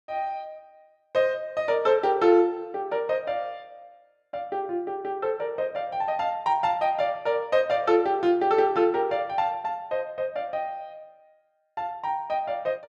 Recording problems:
none

